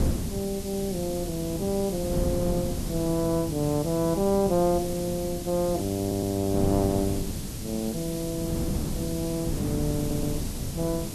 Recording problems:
background hiss; slope +2 dB per octave, SNR 11 dB
wind noise; below 250 Hz, SNR 5 dB
audio stuttering; at 6 s and at 10 s

